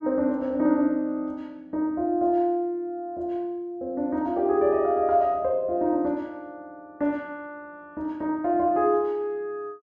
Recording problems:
none

